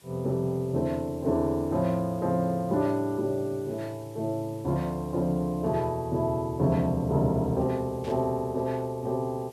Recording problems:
background hiss; SNR 27 dB
static burst; at 8 s; peak -15 dB vs average level

